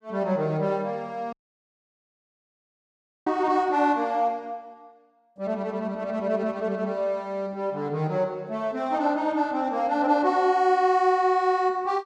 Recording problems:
audio cutting out; at 1.5 s for 2 s

